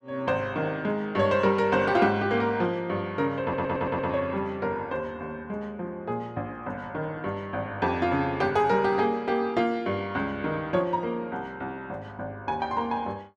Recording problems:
stutter; at 3.5 s

